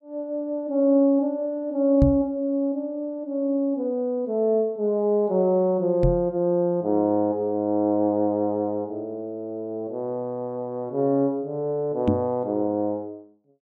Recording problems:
microphone bump; at 2 s, at 6 s and at 12 s; peak +7 dB vs average level

